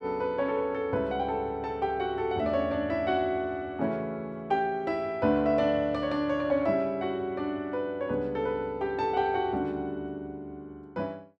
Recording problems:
none

